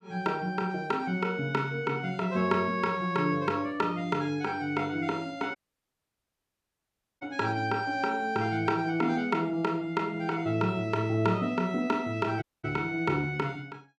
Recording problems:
dropout; at 5.5 s for 1.5 s and at 12 s

